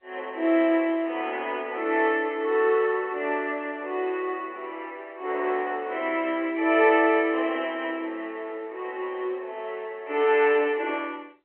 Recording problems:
phone line; 300 Hz to 3.2 kHz, G.711

